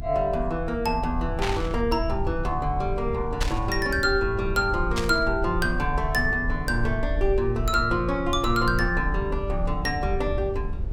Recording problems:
rumble; below 68 Hz, SNR 6 dB
static burst; at 1.5 s, at 3.5 s and at 5 s; peak +1 dB vs average level

